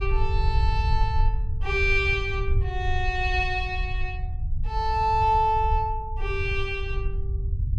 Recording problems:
low-frequency rumble; below 74 Hz, SNR 3 dB

